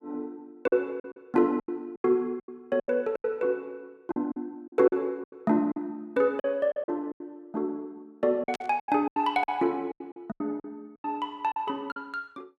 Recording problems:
lost packets; 14% of the sound replaced, filled with silence
burst of static; at 8.5 s; peak -4 dB vs average level

